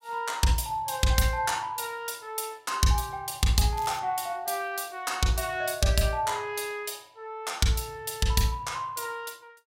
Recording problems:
crackle; at 4 s; loose cable, SNR 18 dB

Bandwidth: 16 kHz